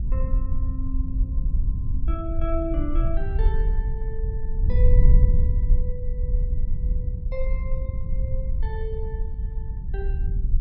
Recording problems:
wind noise; below 62 Hz, SNR -10 dB

